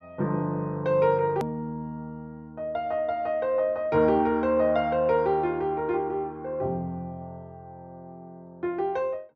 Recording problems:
click at an edit; at 1.5 s

